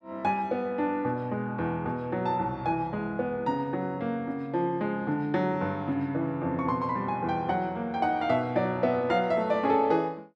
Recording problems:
none

